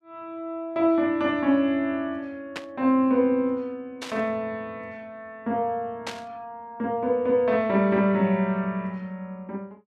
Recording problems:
burst of static; at 2.5 s, at 4 s and at 6 s; peak -4 dB vs average level

